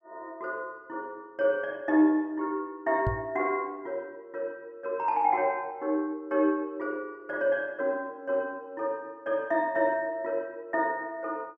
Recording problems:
knock on the microphone; at 3 s; peak +3 dB vs average level

